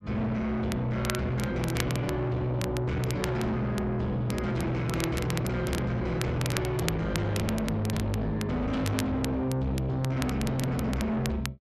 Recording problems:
distorted audio; soft clipping, signal-to-distortion ratio 7 dB
crackle; vinyl, SNR 11 dB

